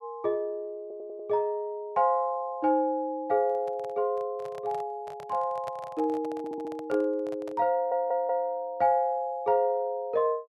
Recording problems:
stutter; at 1 s, at 6.5 s and at 7.5 s
microphone handling noise; from 3.5 to 7.5 s; peak -8 dB vs average level

